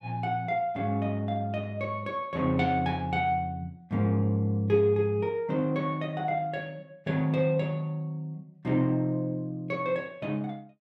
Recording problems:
none

